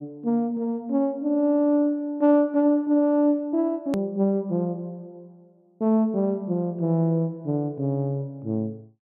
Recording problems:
click at an edit; at 4 s

